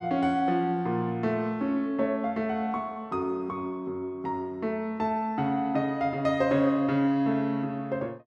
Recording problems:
none

